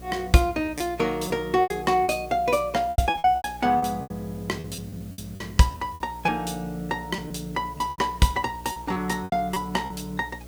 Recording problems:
hum; 60 Hz, harmonics up to 660 Hz, SNR 19 dB
hiss; slope -1 dB per octave, SNR 25 dB
packet loss; 12% of the sound replaced, filled with repeated pitch periods

